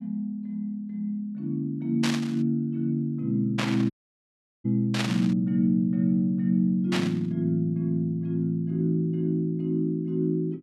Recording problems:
static burst; 4 times, first at 2 s; peak +2 dB vs average level
audio cutting out; at 4 s for 0.5 s

